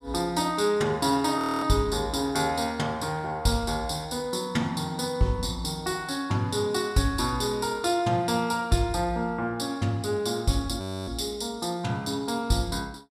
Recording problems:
audio freezing; at 1.5 s and at 11 s

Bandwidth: 14.5 kHz